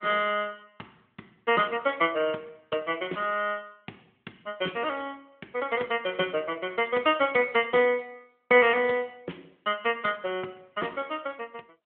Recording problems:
phone line; 260 Hz to 3.4 kHz, AMR-NB

